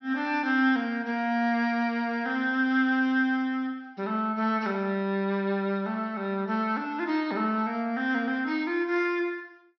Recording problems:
treble cut off; nothing above 5.8 kHz

